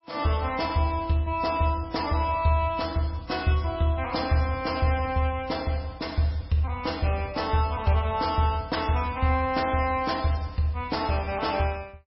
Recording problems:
lossy codec; MP3, log-spectral distance 4 dB, nothing above 5.5 kHz

